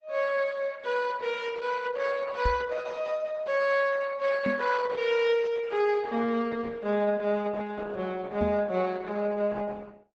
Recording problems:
lossy codec; Opus, log-spectral distance 3 dB, nothing above 8 kHz
knock on the microphone; at 2.5 s, at 4.5 s and at 8.5 s; peak +1 dB vs average level

